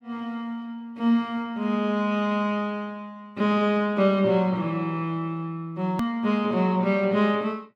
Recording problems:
click at an edit; at 6 s

